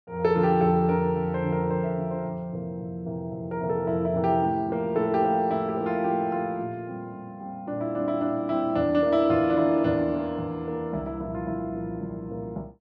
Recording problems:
none

